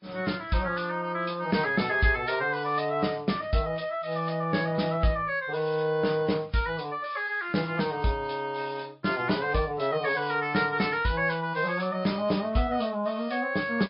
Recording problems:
low-pass filter; nothing above 5.2 kHz
lossy compression; MP3, then MP3, log-spectral distance 3 dB

